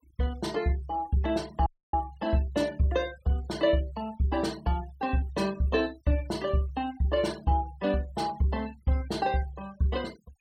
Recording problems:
denoising artefacts; signal-to-artefact ratio 21 dB
dropout; at 1.5 s

